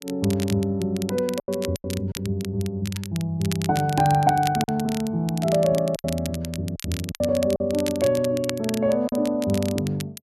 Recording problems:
crackling; vinyl, SNR 13 dB
packet loss; 6% of the sound replaced, filled with silence

